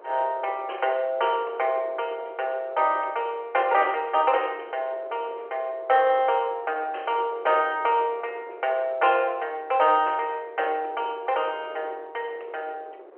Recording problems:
phone line; 340 Hz to 3.2 kHz, G.711
wind noise; below 710 Hz, SNR 20 dB

